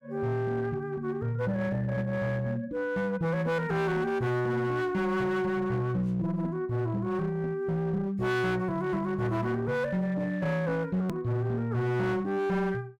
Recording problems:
distorted audio; hard clipping, uneven, signal-to-distortion ratio 11 dB
edit click; at 11 s

